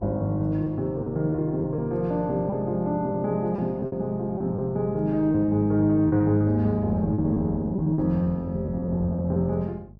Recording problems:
electrical hum; 50 Hz, harmonics up to 600 Hz, SNR 19 dB
packet loss; 8% of the sound replaced, filled with repeated pitch periods

